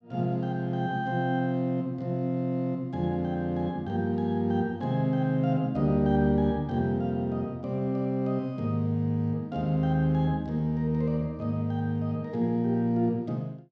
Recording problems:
none

